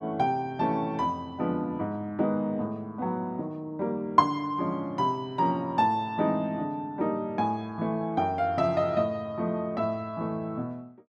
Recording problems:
none

